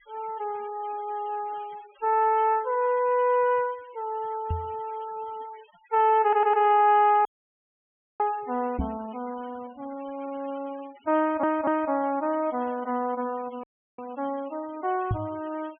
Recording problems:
treble missing; nothing above 3.3 kHz
noise reduction artefacts; signal-to-artefact ratio 25 dB
microphone bump; at 4.5 s, at 9 s and at 15 s; peak +2 dB vs average level
stutter; at 6 s and at 11 s
audio cutting out; at 7.5 s for 1 s and at 14 s

